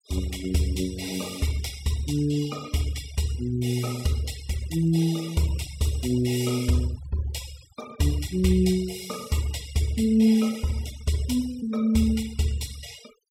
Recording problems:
denoising artefacts; signal-to-artefact ratio 19 dB

